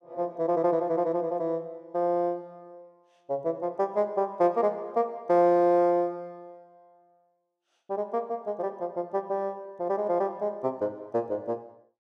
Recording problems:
none

